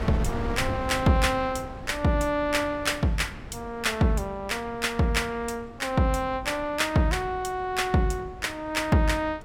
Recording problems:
wind on the microphone; below 350 Hz, SNR 14 dB

